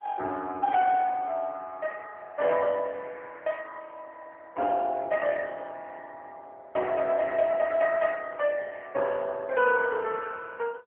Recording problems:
phone line; 320 Hz to 3.4 kHz, AMR-NB

